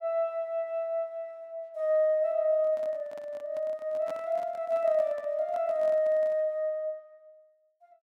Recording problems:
handling noise; from 2.5 to 6.5 s; peak -10 dB vs average level

